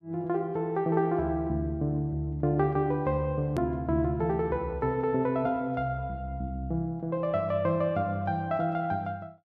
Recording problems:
edit click; at 3.5 s

